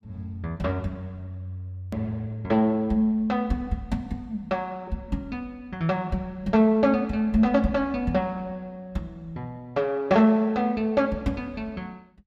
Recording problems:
hard cut with a click; at 2 s

